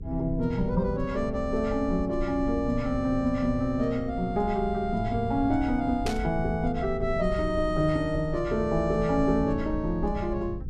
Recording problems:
electrical hum; 60 Hz, harmonics up to 480 Hz, SNR 22 dB
low-frequency rumble; below 86 Hz, SNR 10 dB
static burst; at 6 s; peak -3 dB vs average level

